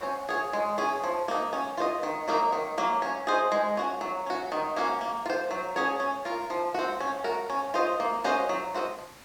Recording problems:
background hiss; slope -3 dB per octave, SNR 22 dB

